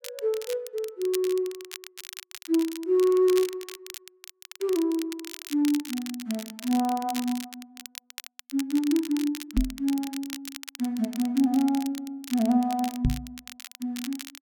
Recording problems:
crackle; vinyl, SNR 14 dB
knock on the microphone; at 9.5 s and at 13 s; peak +6 dB vs average level

